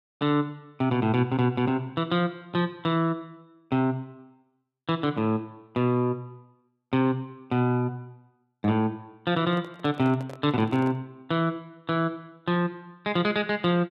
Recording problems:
handling noise; from 9.5 to 11 s; peak -11 dB vs average level

